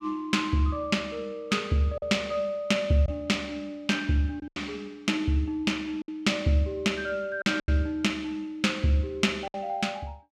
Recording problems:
packet loss; 4% of the sound replaced, filled with silence

